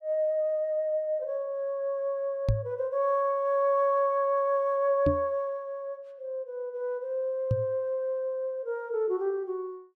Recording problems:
knock on the microphone; at 2.5 s, at 5 s and at 7.5 s; peak +6 dB vs average level

